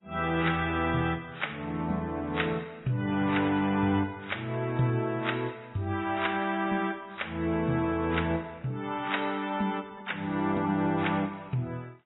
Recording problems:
codec artefacts; Vorbis, then AAC, log-spectral distance 4 dB, nothing above 3.8 kHz

